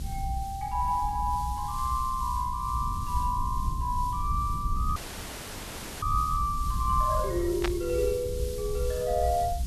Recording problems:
hiss; slope +4 dB per octave, SNR 16 dB
low-frequency rumble; below 82 Hz, SNR 5 dB
audio freezing; at 5 s for 1 s
static burst; at 7.5 s; peak +3 dB vs average level

